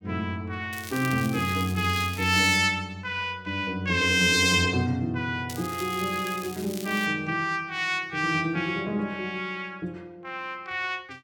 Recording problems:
crackling; from 0.5 to 2.5 s and from 5.5 to 7 s; loose cable, SNR 15 dB

